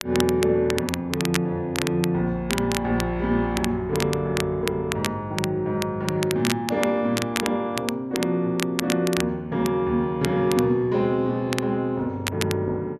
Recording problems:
crackle; vinyl, SNR 8 dB

